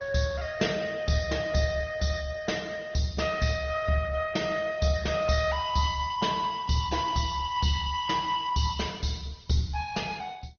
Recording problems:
lossy codec; Opus, then MP2, log-spectral distance 7 dB, nothing above 6.2 kHz

